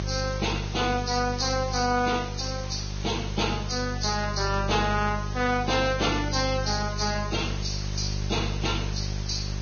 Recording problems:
lossy compression; Vorbis, log-spectral distance 12 dB, nothing above 6.5 kHz
hum; 50 Hz, harmonics up to 600 Hz, SNR 5 dB
background hiss; slope 0 dB per octave, SNR 14 dB

